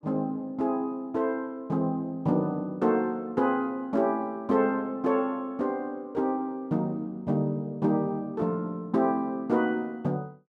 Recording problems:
none

